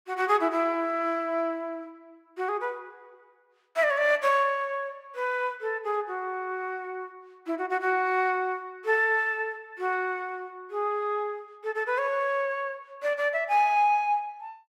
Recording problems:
none

